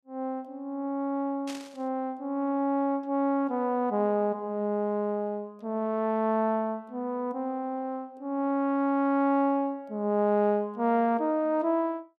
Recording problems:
static burst; at 1.5 s; peak -8 dB vs average level

